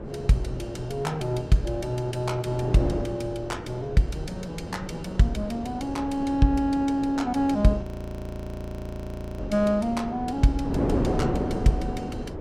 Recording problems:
wind on the microphone; below 440 Hz, SNR 6 dB
audio freezing; at 8 s for 1.5 s

